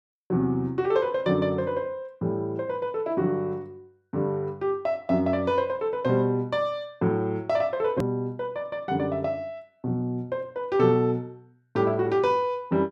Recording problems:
hard cut with a click; at 8 s

